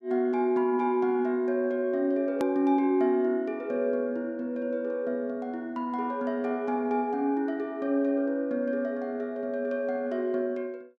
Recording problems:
click at an edit; at 2.5 s

